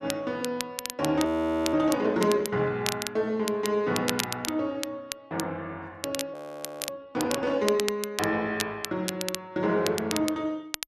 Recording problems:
crackling; vinyl, SNR 7 dB
audio freezing; at 1.5 s and at 6.5 s for 0.5 s

